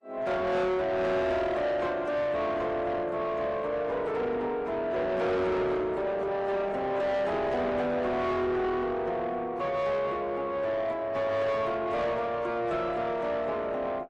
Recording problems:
lossy codec; AAC, log-spectral distance 2 dB
distorted audio; soft clipping, signal-to-distortion ratio 7 dB

